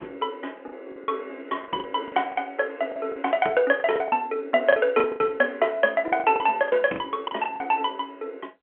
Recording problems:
phone line; 260 Hz to 3.3 kHz, G.711
packet loss; 11% of the sound replaced, filled with the last packet

